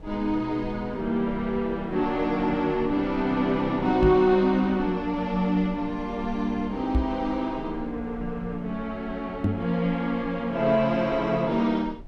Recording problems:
rumble; below 170 Hz, SNR 19 dB
microphone bump; at 4 s, at 7 s and at 9.5 s; peak +4 dB vs average level

